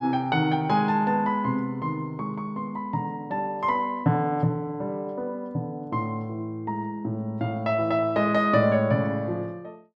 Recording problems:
none

